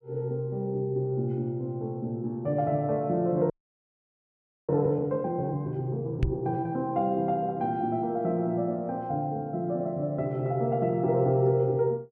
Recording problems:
audio freezing; at 3.5 s for 1 s
microphone thump; at 6 s; peak +5 dB vs average level

